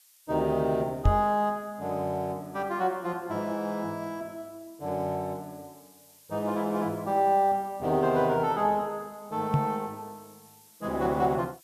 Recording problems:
background hiss; slope +5 dB per octave, SNR 26 dB
microphone bump; at 1 s and at 9.5 s; peak +8 dB vs average level

